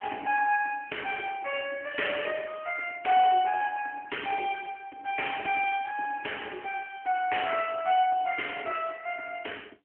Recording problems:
phone line; 280 Hz to 3.2 kHz, AMR-NB

